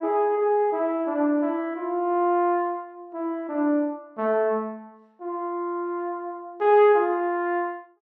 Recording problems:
none

